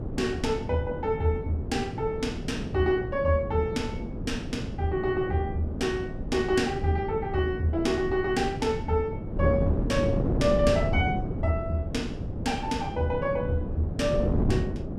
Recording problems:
wind on the microphone; below 290 Hz, SNR 4 dB

